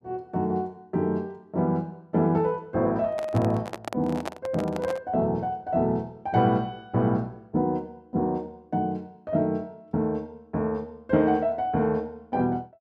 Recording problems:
microphone handling noise; from 3 to 5 s; peak -1 dB vs average level

